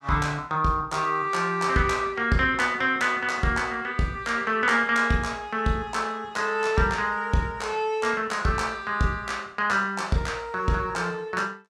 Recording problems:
none

